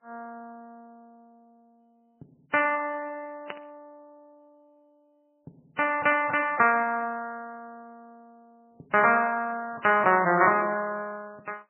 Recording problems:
codec artefacts; MP2, then MP3, log-spectral distance 3 dB, nothing above 2.7 kHz
burst of static; at 3.5 s; peak -8 dB vs average level

